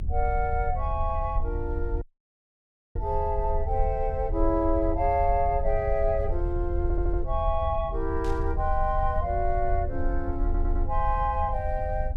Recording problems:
rumble; below 76 Hz, SNR 3 dB
dropout; at 2 s for 1 s
stutter; at 7 s and at 10 s
burst of static; at 8 s; peak -14 dB vs average level

